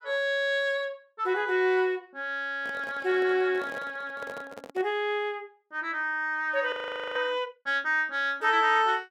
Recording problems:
handling noise; from 2.5 to 5 s; peak -10 dB vs average level
audio freezing; at 6.5 s

